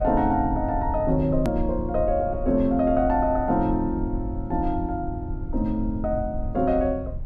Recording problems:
rumble; below 88 Hz, SNR 8 dB
edit click; at 1.5 s

